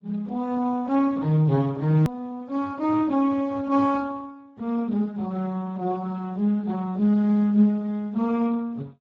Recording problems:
codec artefacts; Speex, log-spectral distance 2 dB, nothing above 18.9 kHz
click at an edit; at 2 s

